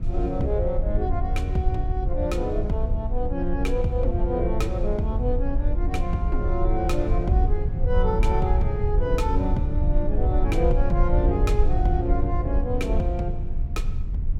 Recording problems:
rumble; below 68 Hz, SNR -1 dB

